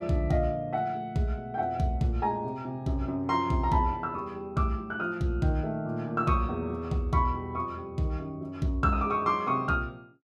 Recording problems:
none

